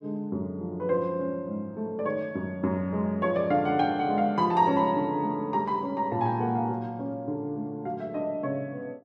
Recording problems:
none

